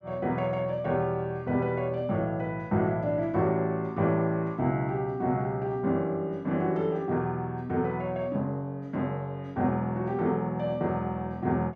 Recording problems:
none

